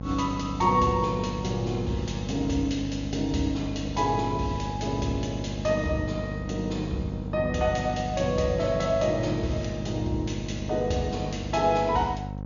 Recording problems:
treble missing; nothing above 7 kHz
hum; 50 Hz, harmonics up to 1.1 kHz, SNR 7 dB

